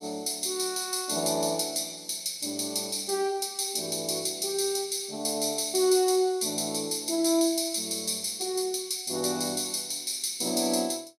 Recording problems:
none

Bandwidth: 15.5 kHz